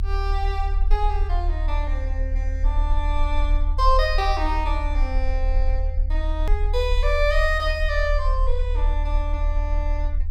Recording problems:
low-frequency rumble; below 42 Hz, strongest tone 36 Hz, SNR -2 dB
click at an edit; at 6.5 s

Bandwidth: 17 kHz